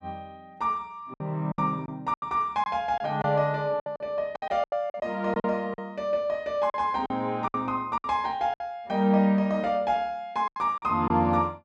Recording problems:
packet loss; 10% of the sound replaced, filled with silence

